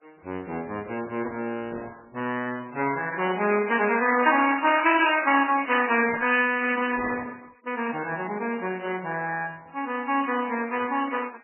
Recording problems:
codec artefacts; Opus, then MP3, log-spectral distance 6 dB, nothing above 2.8 kHz

